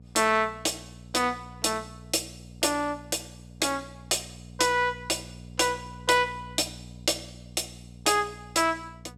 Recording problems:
hum; 60 Hz, harmonics up to 540 Hz, SNR 19 dB

